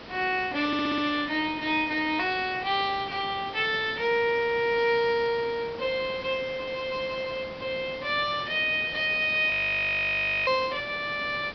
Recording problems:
treble missing; nothing above 5.5 kHz
hiss; slope -5 dB per octave, SNR 16 dB
audio stuttering; at 0.5 s
frozen audio; at 9.5 s for 1 s

